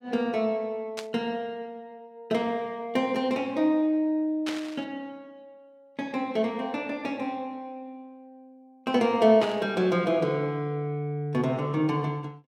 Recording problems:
burst of static; at 1 s, at 4.5 s and at 9.5 s; peak -2 dB vs average level

